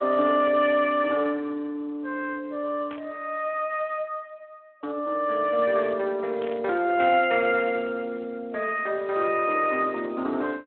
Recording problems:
phone line; 240 Hz to 3.5 kHz, Speex
burst of static; at 3 s and at 6.5 s; peak -12 dB vs average level

